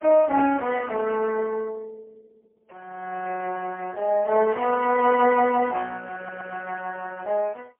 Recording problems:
telephone audio; 260 Hz to 2.5 kHz, AMR-NB, then MP3
burst of static; at 4.5 s; peak -14 dB vs average level
audio stuttering; at 6 s

